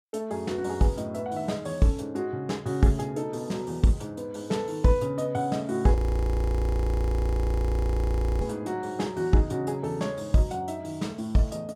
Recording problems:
audio freezing; at 6 s for 2.5 s

